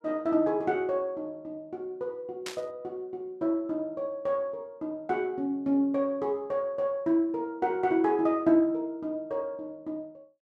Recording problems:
static burst; at 2.5 s; peak -4 dB vs average level

